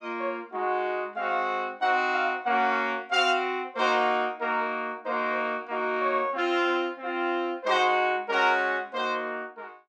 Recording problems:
none

